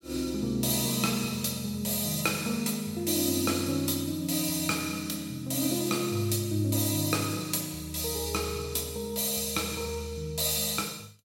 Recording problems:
none

